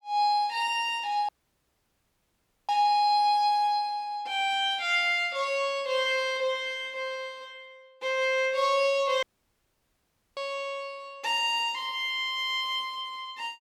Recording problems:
audio cutting out; at 1.5 s for 1.5 s and at 9 s for 1 s

